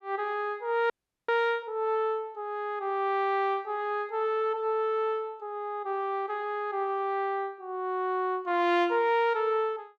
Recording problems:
audio freezing; at 1 s

